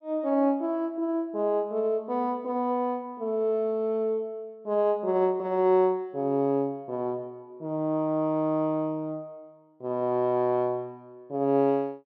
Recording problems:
none

